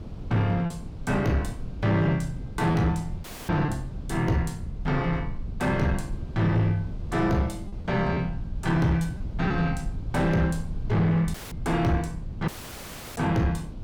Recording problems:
distortion; soft clipping, signal-to-distortion ratio 12 dB
low-frequency rumble; below 100 Hz, SNR 12 dB
wind on the microphone; below 220 Hz, SNR 16 dB
lost packets; 1.6% of the sound replaced, filled with repeated pitch periods
dropout; at 3 s, at 11 s and at 12 s for 0.5 s; filled with static

